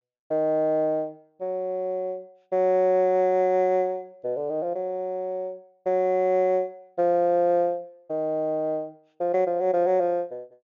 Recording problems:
low-pass filter; nothing above 7.1 kHz

